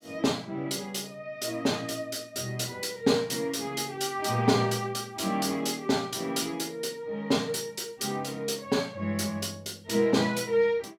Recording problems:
none

